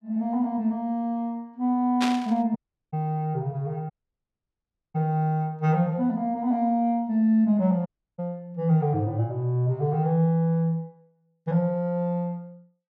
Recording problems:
burst of static; at 2 s; peak +1 dB vs average level
dropout; at 2.5 s, at 4 s for 1 s and at 8 s

